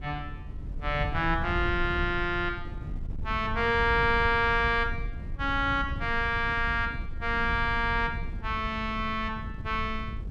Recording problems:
wind on the microphone; below 100 Hz, SNR 9 dB

